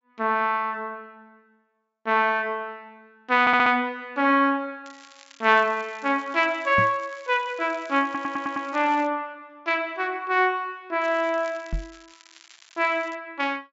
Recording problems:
treble missing; nothing above 8 kHz
audio stuttering; at 3.5 s and at 8 s
crackle; from 5 to 9 s and from 11 to 13 s; loose cable, SNR 26 dB
knock on the microphone; at 7 s and at 12 s; peak -2 dB vs average level

